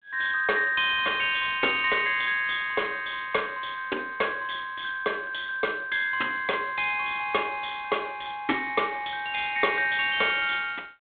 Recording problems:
phone line; 260 Hz to 3.6 kHz, G.726

